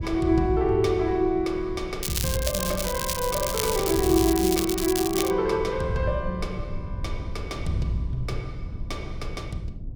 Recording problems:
rumble; below 110 Hz, SNR 12 dB
crackle; from 2 to 5.5 s; loose cable, SNR 4 dB

